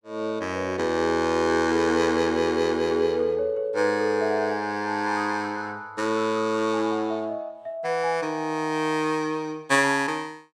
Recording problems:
none

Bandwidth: 17 kHz